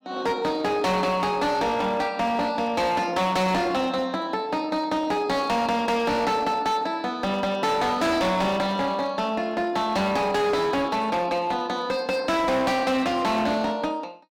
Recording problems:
distorted audio; hard clipping, signal-to-distortion ratio 7 dB

